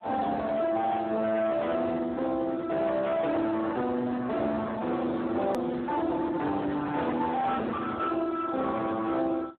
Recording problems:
telephone audio; 190 Hz to 2 kHz, Speex
distortion; soft clipping, signal-to-distortion ratio 8 dB
click at an edit; at 5.5 s

